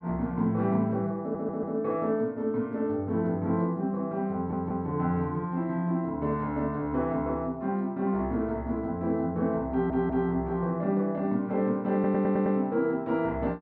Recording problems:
audio stuttering; 4 times, first at 1 s

